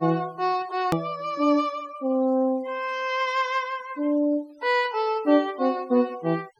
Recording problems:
denoising artefacts; signal-to-artefact ratio 23 dB
click at an edit; at 1 s

